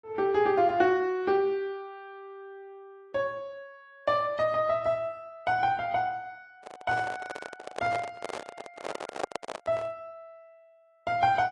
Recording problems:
lossy codec; AAC, log-spectral distance 2 dB
handling noise; from 6.5 to 10 s; peak +1 dB vs average level

